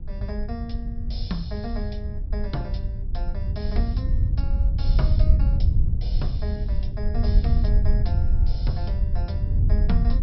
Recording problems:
low-pass filter; nothing above 5.5 kHz
wind noise; below 80 Hz, SNR -10 dB

